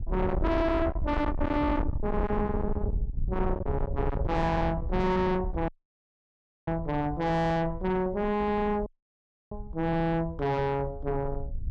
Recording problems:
distortion; soft clipping, signal-to-distortion ratio 6 dB
wind noise; below 290 Hz, SNR 5 dB
audio cutting out; at 5.5 s for 1 s and at 9 s for 0.5 s

